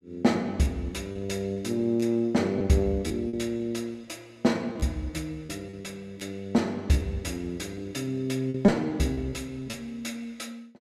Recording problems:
packet loss; 7% of the sound replaced, filled with repeated pitch periods

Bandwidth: 14.5 kHz